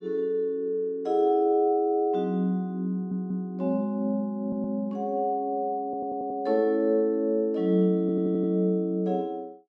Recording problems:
stutter; 4 times, first at 3 s

